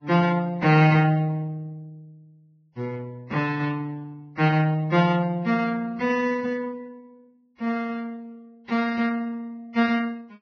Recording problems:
lossy compression; Vorbis, log-spectral distance 2 dB, nothing above 5.7 kHz

